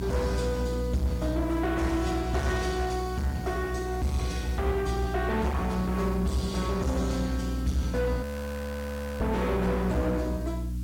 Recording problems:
lossy compression; AAC, log-spectral distance 2 dB, nothing above 16.6 kHz
distortion; soft clipping, signal-to-distortion ratio 7 dB
hum; 60 Hz, harmonics up to 300 Hz, SNR 3 dB
background hiss; slope 0 dB per octave, SNR 23 dB
frozen audio; at 8 s for 1 s

